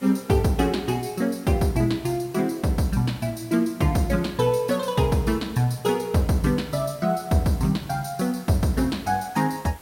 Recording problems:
background hiss; slope -4 dB per octave, SNR 24 dB

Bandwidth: 16 kHz